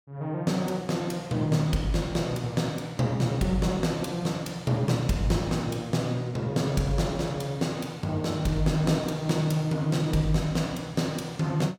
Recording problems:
none

